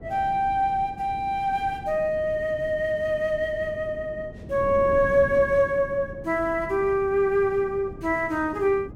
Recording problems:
wind noise; below 300 Hz, SNR 16 dB

